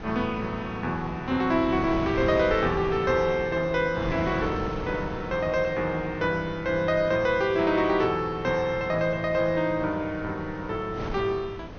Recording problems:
treble cut off; nothing above 6.4 kHz
wind on the microphone; below 640 Hz, SNR 11 dB

